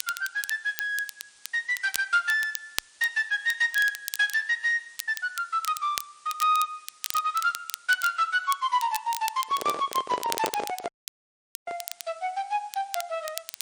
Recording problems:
lossy codec; MP3, log-spectral distance 7 dB
background hiss; slope +2 dB per octave, SNR 27 dB
crackling; vinyl, SNR 10 dB
handling noise; from 9.5 to 12 s; peak +1 dB vs average level
audio cutting out; at 11 s for 1 s

